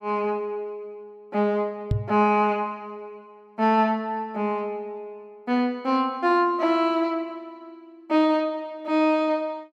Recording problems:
microphone bump; at 2 s; peak +3 dB vs average level

